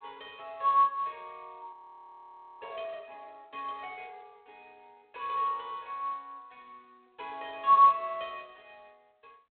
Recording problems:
phone line; 300 Hz to 3.7 kHz, G.726
frozen audio; at 1.5 s for 1 s

